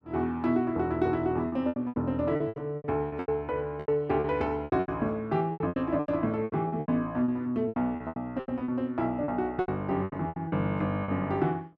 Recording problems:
lost packets; 17% of the sound replaced, filled with repeated pitch periods

